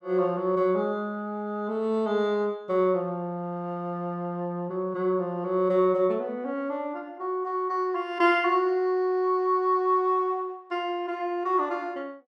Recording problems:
none

